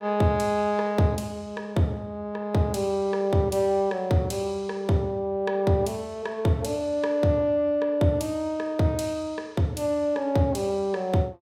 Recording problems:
none

